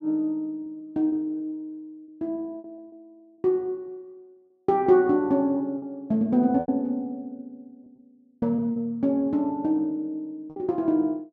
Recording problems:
packet loss; 6% of the sound replaced, filled with repeated pitch periods

